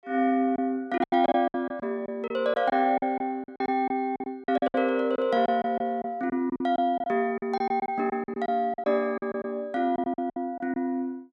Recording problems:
packet loss; 13% of the sound replaced, filled with silence

